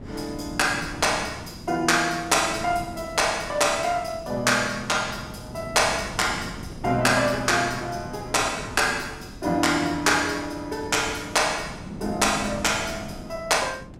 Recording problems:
wind on the microphone; below 280 Hz, SNR 16 dB

